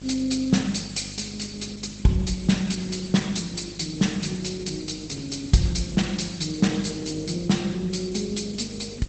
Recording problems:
lossy compression; Opus, log-spectral distance 9 dB, nothing above 8 kHz
hum; 50 Hz, harmonics up to 850 Hz, SNR 16 dB
hiss; slope +2 dB per octave, SNR 24 dB

